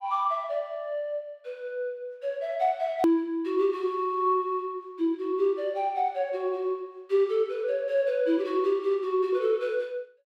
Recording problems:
edit click; at 3 s

